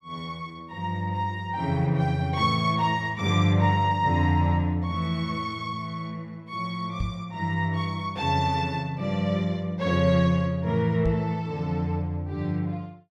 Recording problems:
knock on the microphone; at 7 s and at 11 s; peak 0 dB vs average level

